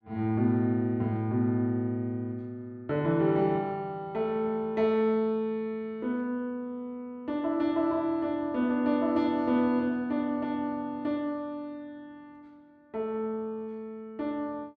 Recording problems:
none

